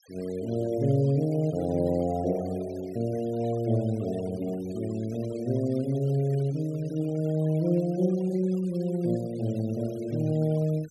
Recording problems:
noise reduction artefacts; signal-to-artefact ratio 23 dB

